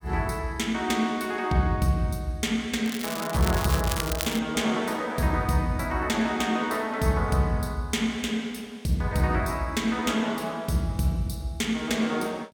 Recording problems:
crackling; from 3 to 4.5 s; loose cable, SNR 7 dB

